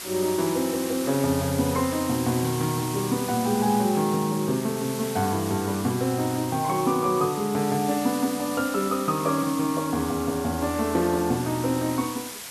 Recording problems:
hiss; slope 0 dB per octave, SNR 10 dB

